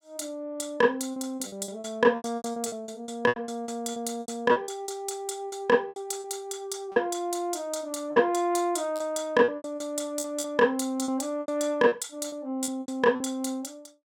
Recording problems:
lost packets; 13% of the sound replaced, filled with repeated pitch periods

